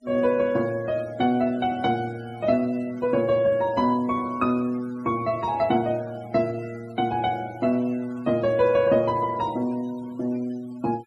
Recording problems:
denoising artefacts; signal-to-artefact ratio 23 dB

